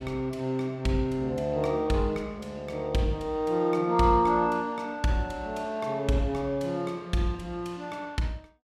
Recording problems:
none

